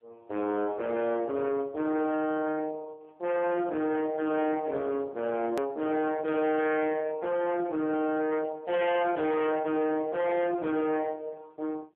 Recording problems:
telephone audio; 930 Hz to 2.2 kHz, AMR-NB
distortion; hard clipping, signal-to-distortion ratio 6 dB
hard cut with a click; at 5.5 s

